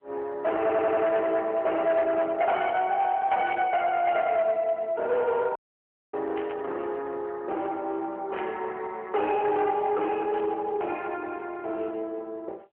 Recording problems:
telephone audio; 340 Hz to 3.5 kHz, AMR-NB
distortion; hard clipping, uneven, signal-to-distortion ratio 12 dB
audio stuttering; at 0.5 s
burst of static; 4 times, first at 3.5 s; peak -8 dB vs average level
audio cutting out; at 5.5 s for 0.5 s

